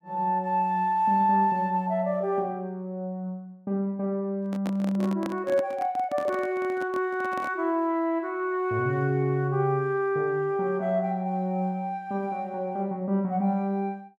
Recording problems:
microphone handling noise; from 4.5 to 7.5 s; peak -4 dB vs average level

